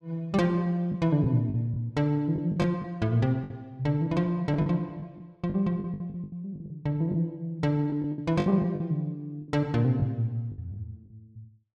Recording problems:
lost packets; 10% of the sound replaced, filled with the last packet

